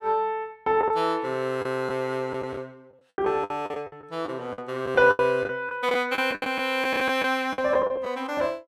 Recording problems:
packet loss; 11% of the sound replaced, filled with the last packet

